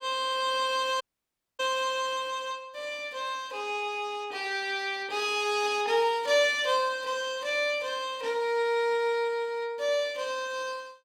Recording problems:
audio cutting out; at 1 s for 0.5 s

